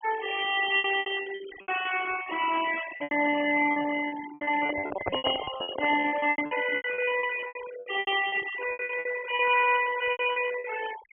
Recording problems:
low-pass filter; nothing above 3.3 kHz
noise reduction artefacts; signal-to-artefact ratio 12 dB
lost packets; 21% of the sound replaced, filled with repeated pitch periods
microphone handling noise; from 4.5 to 6 s; peak +1 dB vs average level

